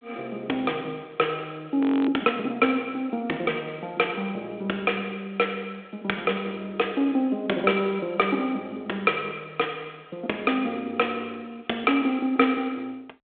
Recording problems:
telephone audio; 300 Hz to 3.7 kHz, G.726
audio freezing; at 2 s

